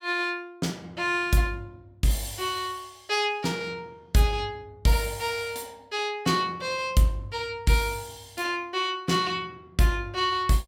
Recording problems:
none

